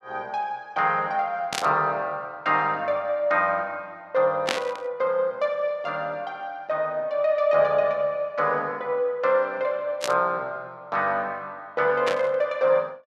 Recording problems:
burst of static; 4 times, first at 1.5 s; peak +3 dB vs average level

